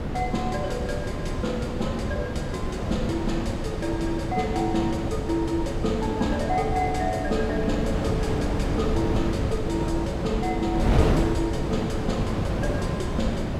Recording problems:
wind on the microphone; below 400 Hz, SNR -1 dB

